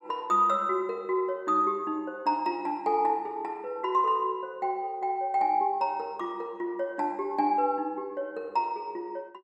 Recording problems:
none

